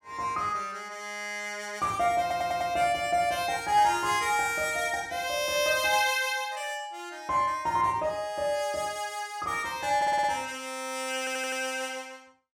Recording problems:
audio stuttering; at 2 s, at 10 s and at 11 s

